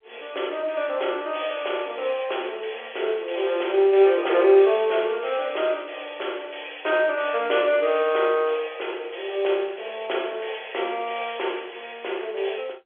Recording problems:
phone line; 320 Hz to 3.4 kHz, G.711

